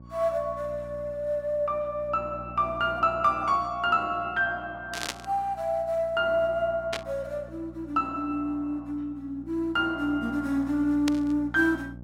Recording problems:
hum; 60 Hz, harmonics up to 660 Hz, SNR 18 dB
burst of static; at 5 s, at 7 s and at 11 s; peak +1 dB vs average level

